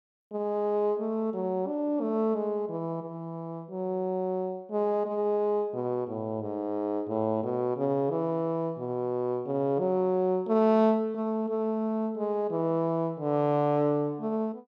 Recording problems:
none

